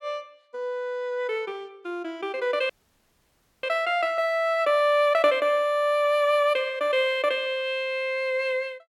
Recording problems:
audio freezing; at 2.5 s for 1 s

